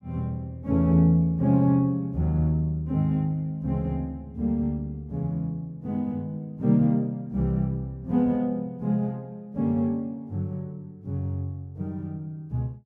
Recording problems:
none

